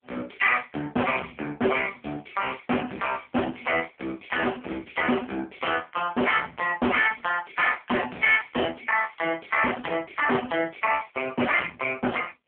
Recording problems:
telephone audio; 260 Hz to 3.1 kHz, AMR-NB
distortion; hard clipping, signal-to-distortion ratio 10 dB

